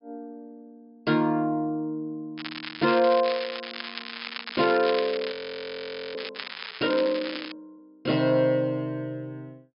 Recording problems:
treble missing; nothing above 5.5 kHz
crackling; from 2.5 to 6.5 s and from 6.5 to 7.5 s; loose cable, SNR 9 dB
frozen audio; at 5.5 s for 1 s

